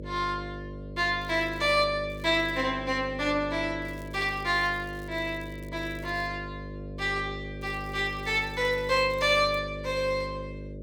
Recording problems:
electrical hum; 50 Hz, harmonics up to 600 Hz, SNR 12 dB
crackle; 4 times, first at 1 s; loose cable, SNR 28 dB

